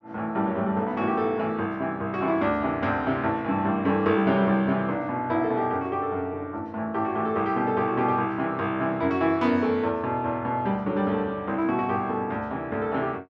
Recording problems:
none

